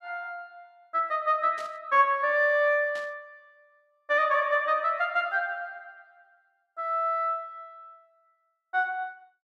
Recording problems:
burst of static; at 1.5 s and at 3 s; peak -15 dB vs average level

